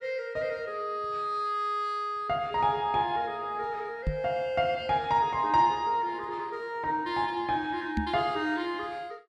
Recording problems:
microphone thump; at 4 s and at 8 s; peak +3 dB vs average level

